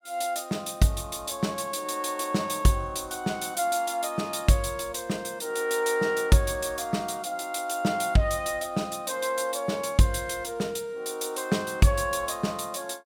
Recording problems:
none

